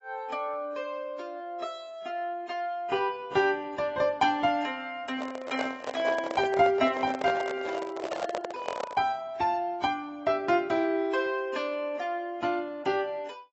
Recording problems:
lossy compression; AAC, log-spectral distance 2 dB, nothing above 7.6 kHz
microphone handling noise; from 5 to 9 s; peak +1 dB vs average level

